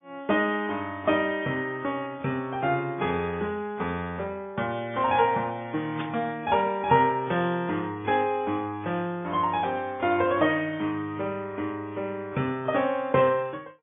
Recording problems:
low-pass filter; nothing above 3.4 kHz
lossy compression; AAC, log-spectral distance 2 dB
static burst; at 6 s; peak -5 dB vs average level

